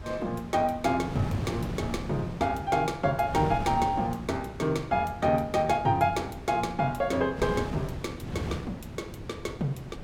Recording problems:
wind on the microphone; below 370 Hz, SNR 9 dB

